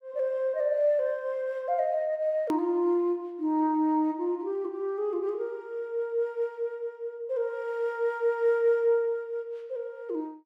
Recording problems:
edit click; at 2.5 s

